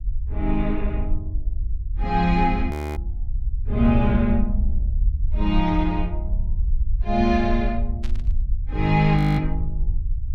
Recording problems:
rumble; below 60 Hz, SNR 4 dB
audio freezing; at 2.5 s and at 9 s
static burst; at 8 s; peak -14 dB vs average level

